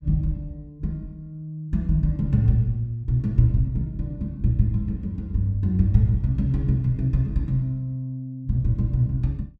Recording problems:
none

